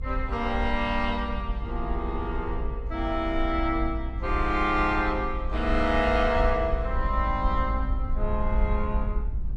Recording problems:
rumble; below 56 Hz, SNR 4 dB

